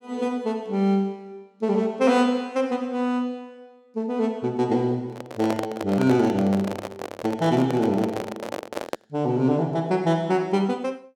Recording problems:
microphone handling noise; from 5 to 9 s; peak -1 dB vs average level

